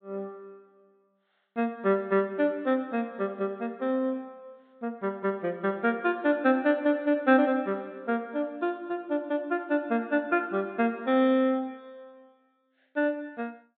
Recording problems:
treble cut off; nothing above 4 kHz

